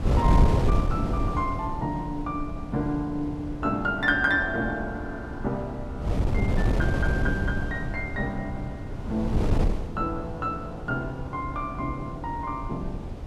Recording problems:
wind noise; below 180 Hz, SNR 1 dB

